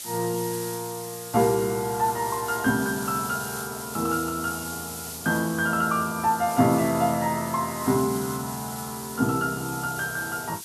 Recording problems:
background hiss; SNR 9 dB

